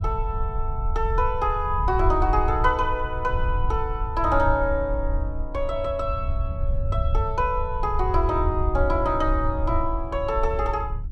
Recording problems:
low-frequency rumble; below 74 Hz, SNR 3 dB

